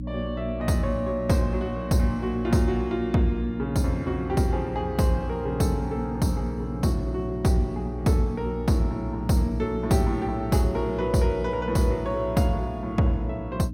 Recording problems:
mains hum; 60 Hz, harmonics up to 300 Hz, SNR 8 dB

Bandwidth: 16.5 kHz